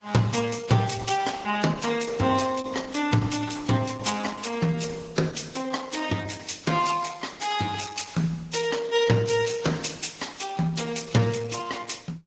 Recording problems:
codec artefacts; Vorbis, then Opus, log-spectral distance 6 dB, nothing above 7.6 kHz

